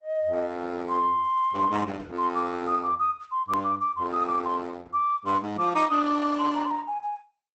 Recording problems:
lossy codec; Opus, log-spectral distance 2 dB, nothing above 18.3 kHz
hard cut with a click; at 3.5 s

